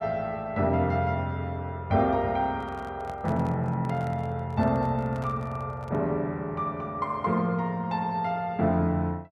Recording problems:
microphone handling noise; from 2.5 to 6 s; peak -10 dB vs average level

